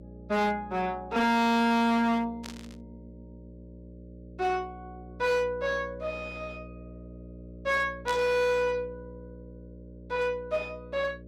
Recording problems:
distorted audio; hard clipping, signal-to-distortion ratio 7 dB
hum; 60 Hz, harmonics up to 600 Hz, SNR 18 dB
static burst; at 2.5 s and at 8 s; peak -7 dB vs average level

